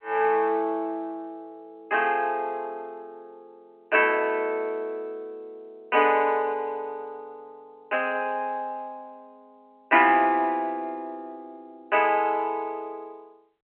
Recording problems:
phone line; 280 Hz to 3.1 kHz, G.711

